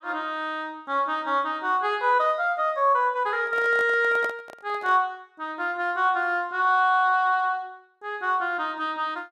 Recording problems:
handling noise; from 3.5 to 5 s; peak -6 dB vs average level

